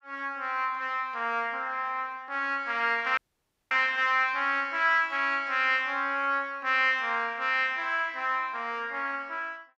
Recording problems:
audio cutting out; at 3 s for 0.5 s

